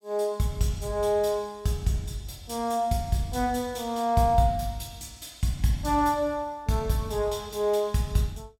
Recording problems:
none

